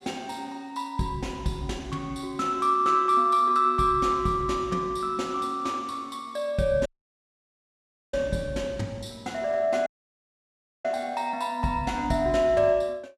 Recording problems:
audio cutting out; at 7 s for 1.5 s and at 10 s for 1 s

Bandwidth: 14.5 kHz